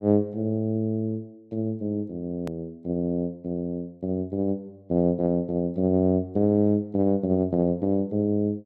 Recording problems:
edit click; at 2.5 s

